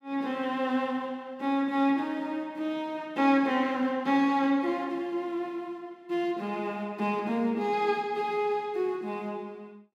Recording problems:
none

